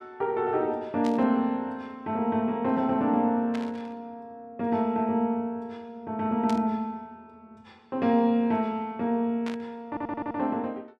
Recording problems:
burst of static; 4 times, first at 1 s; peak -8 dB vs average level
audio stuttering; at 10 s

